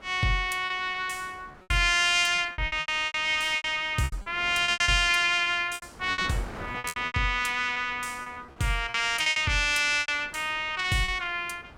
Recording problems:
wind on the microphone; below 1.3 kHz, SNR 22 dB
lost packets; 14% of the sound replaced, filled with repeated pitch periods

